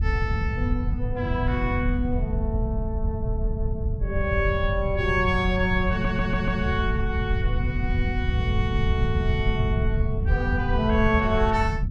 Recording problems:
low-frequency rumble; below 110 Hz, SNR 0 dB
audio stuttering; at 6 s

